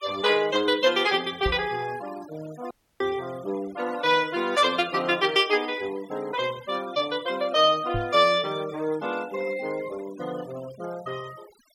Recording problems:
noise reduction artefacts; signal-to-artefact ratio 20 dB
microphone thump; at 1.5 s and at 8 s; peak -2 dB vs average level
audio cutting out; at 2.5 s

